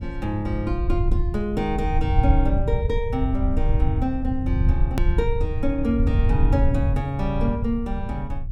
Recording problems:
rumble; below 88 Hz, SNR -2 dB
click at an edit; at 5 s

